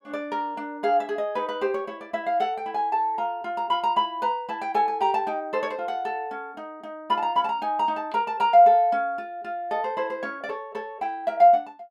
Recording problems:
none

